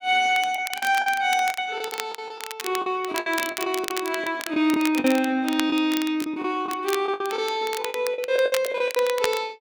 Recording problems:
crackle; vinyl, SNR 11 dB
lost packets; 15% of the sound replaced, filled with the last packet

